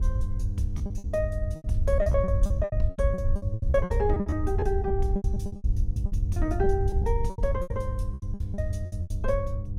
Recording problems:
hum; 50 Hz, harmonics up to 500 Hz, SNR 6 dB
low-frequency rumble; below 78 Hz, SNR -1 dB
packet loss; 19% of the sound replaced, filled with repeated pitch periods

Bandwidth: 16 kHz